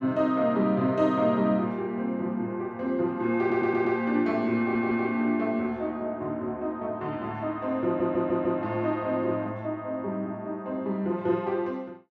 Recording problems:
audio stuttering; at 3.5 s, at 4.5 s and at 8 s

